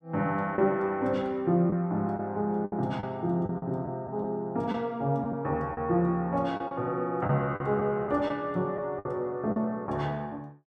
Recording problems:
lost packets; 6% of the sound replaced, filled with the last packet

